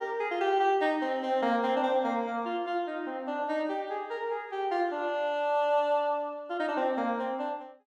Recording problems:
none

